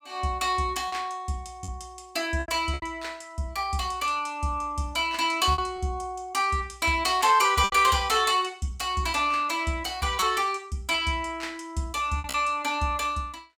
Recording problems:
lost packets; 4% of the sound replaced, filled with repeated pitch periods

